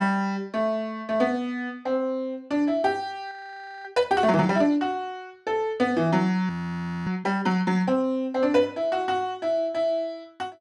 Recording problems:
audio freezing; at 3.5 s for 0.5 s and at 6.5 s for 0.5 s

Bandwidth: 11.5 kHz